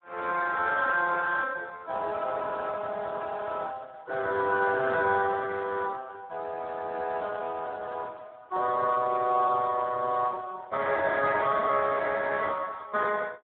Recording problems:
phone line; 320 Hz to 2 kHz, Speex

